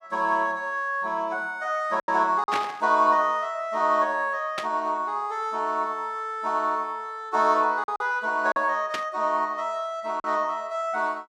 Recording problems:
lost packets; 3% of the sound replaced, filled with silence
burst of static; at 2.5 s, at 4.5 s and at 9 s; peak 0 dB vs average level

